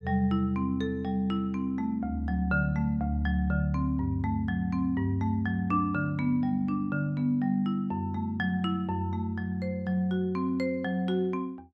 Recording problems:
none

